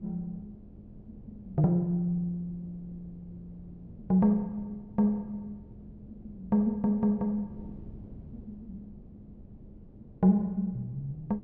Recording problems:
wind on the microphone; below 220 Hz, SNR 21 dB

